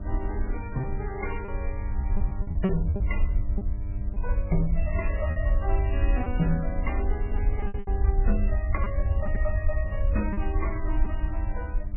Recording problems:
codec artefacts; MP3, then MP3, log-spectral distance 3 dB, nothing above 2.5 kHz
hum; 50 Hz, harmonics up to 1 kHz, SNR 9 dB
low-frequency rumble; below 64 Hz, SNR -4 dB
packet loss; 6% of the sound replaced, filled with repeated pitch periods

